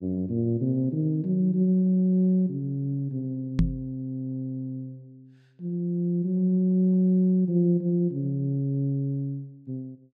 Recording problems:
knock on the microphone; at 3.5 s; peak +6 dB vs average level

